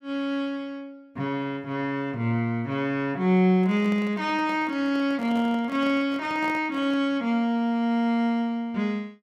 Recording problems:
microphone handling noise; from 3.5 to 7 s; peak -9 dB vs average level

